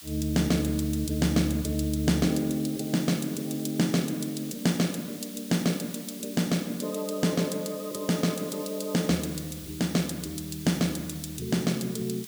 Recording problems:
hiss; slope +4 dB per octave, SNR 14 dB

